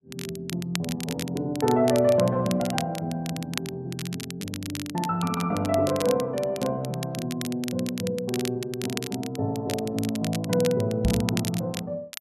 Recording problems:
crackle; vinyl, SNR 10 dB
knock on the microphone; at 11 s; peak +4 dB vs average level

